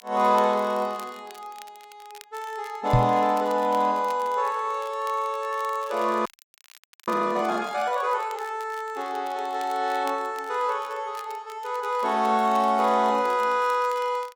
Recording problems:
crackling; vinyl, SNR 24 dB
knock on the microphone; at 3 s; peak +7 dB vs average level
frozen audio; at 6.5 s for 1 s

